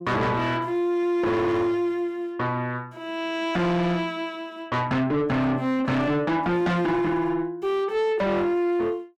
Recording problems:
distorted audio; soft clipping, signal-to-distortion ratio 7 dB

